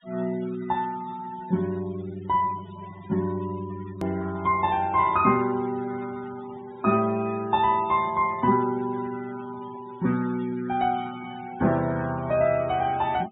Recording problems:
low-pass filter; nothing above 4 kHz
denoising artefacts; signal-to-artefact ratio 21 dB
click at an edit; at 4 s

